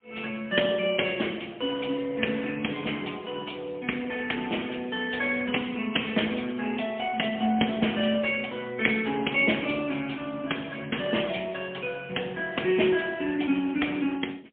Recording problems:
phone line; 170 Hz to 3.3 kHz, AMR-NB, then MP3

